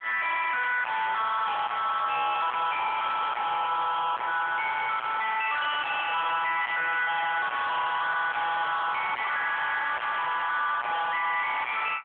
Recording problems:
phone line; 990 Hz to 2 kHz, AMR-NB
distorted audio; hard clipping, signal-to-distortion ratio 4 dB

